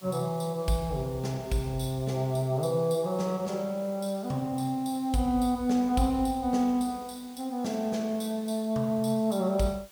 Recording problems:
hiss; slope 0 dB per octave, SNR 23 dB

